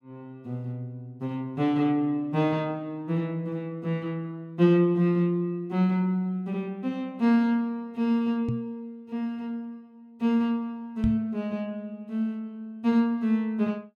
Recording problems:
microphone bump; at 8.5 s and at 11 s; peak +2 dB vs average level

